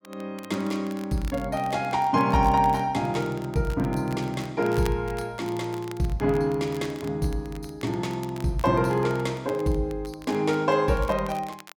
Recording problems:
crackle; vinyl, SNR 21 dB

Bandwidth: 17 kHz